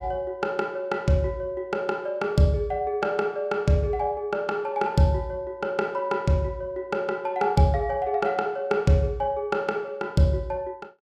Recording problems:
none

